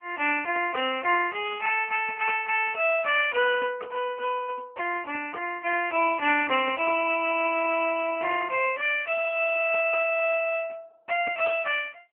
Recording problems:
telephone audio; 280 Hz to 3 kHz, AMR-NB

